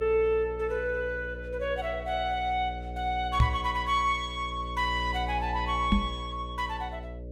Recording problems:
hum; 60 Hz, harmonics up to 600 Hz, SNR 9 dB
microphone bump; at 3.5 s and at 6 s; peak +9 dB vs average level

